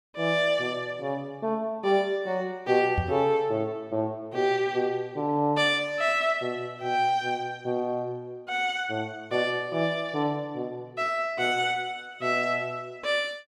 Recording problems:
microphone thump; at 3 s; peak +3 dB vs average level

